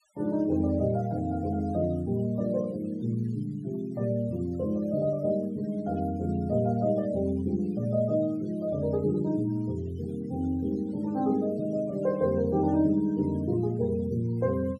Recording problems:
noise reduction artefacts; signal-to-artefact ratio 27 dB

